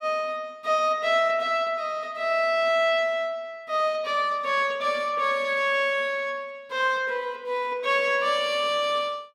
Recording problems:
none

